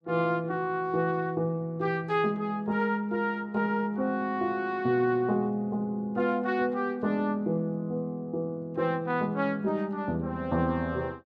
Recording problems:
none

